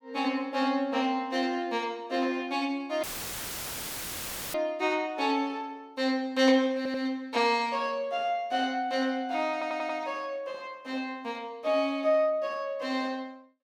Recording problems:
dropout; at 3 s for 1.5 s; filled with static
audio stuttering; at 7 s and at 9.5 s

